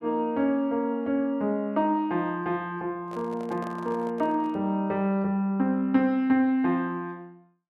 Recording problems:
microphone handling noise; from 3 to 4.5 s; peak -12 dB vs average level

